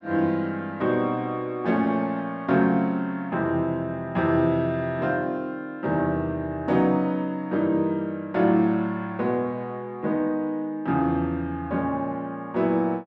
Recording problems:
none

